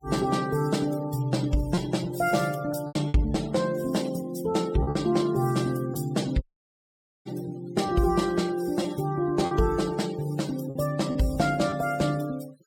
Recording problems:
denoising artefacts; signal-to-artefact ratio 18 dB
lost packets; 4% of the sound replaced, filled with repeated pitch periods
dropout; at 6.5 s for 1 s

